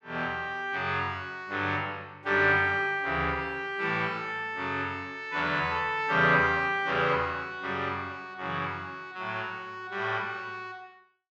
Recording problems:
none

